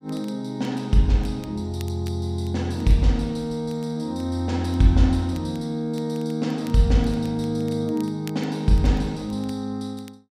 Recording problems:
crackle; vinyl, SNR 27 dB

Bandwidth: 15 kHz